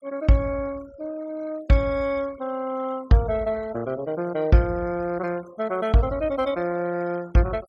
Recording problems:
noise reduction artefacts; signal-to-artefact ratio 21 dB

